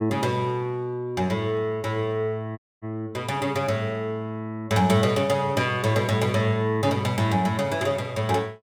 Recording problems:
dropout; at 2.5 s

